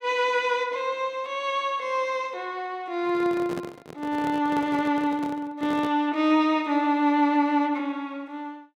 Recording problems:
microphone handling noise; from 3 to 6 s; peak -5 dB vs average level

